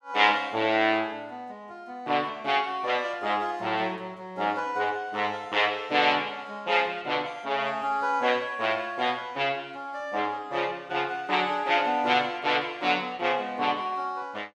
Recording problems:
none

